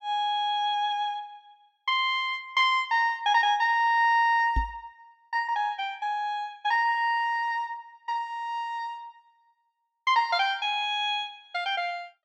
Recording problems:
microphone bump; at 4.5 s; peak +1 dB vs average level

